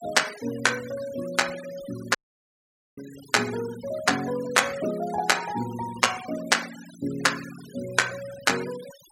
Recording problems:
denoising artefacts; signal-to-artefact ratio 15 dB
audio cutting out; at 2 s for 1 s

